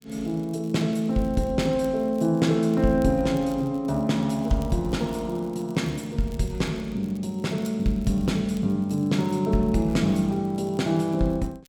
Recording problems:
crackling; vinyl, SNR 29 dB

